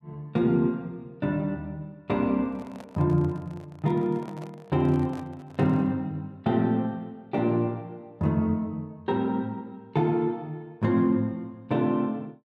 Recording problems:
microphone handling noise; from 2.5 to 6 s; peak -13 dB vs average level

